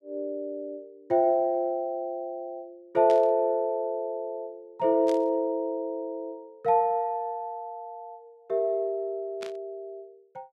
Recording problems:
static burst; at 3 s, at 5 s and at 9.5 s; peak -10 dB vs average level

